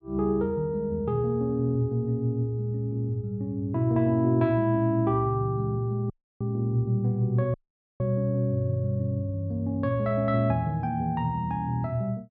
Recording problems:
audio cutting out; at 6 s and at 7.5 s

